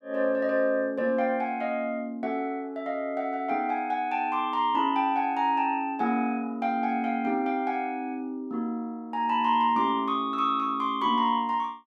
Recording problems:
none

